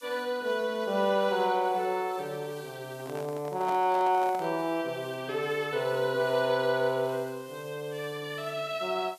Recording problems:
background hiss; SNR 25 dB
microphone handling noise; from 3 to 4.5 s; peak -6 dB vs average level

